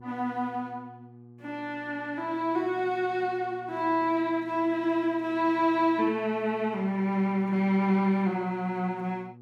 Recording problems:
hum; 60 Hz, harmonics up to 840 Hz, SNR 23 dB

